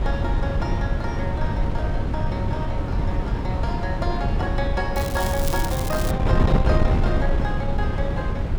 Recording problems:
wind on the microphone; below 170 Hz, SNR -5 dB
crackle; from 5 to 6 s; loose cable, SNR 4 dB

